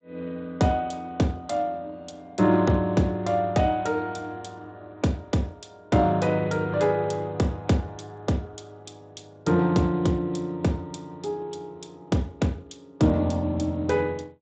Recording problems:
lossy codec; Speex, log-spectral distance 4 dB, nothing above 7.8 kHz

